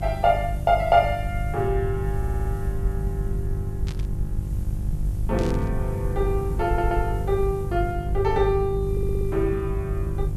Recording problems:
hum; 50 Hz, harmonics up to 550 Hz, SNR 6 dB
background hiss; slope +1 dB per octave, SNR 27 dB
rumble; below 82 Hz, SNR 6 dB
audio stuttering; at 2 s, at 6.5 s and at 9 s
burst of static; at 4 s and at 5.5 s; peak -11 dB vs average level

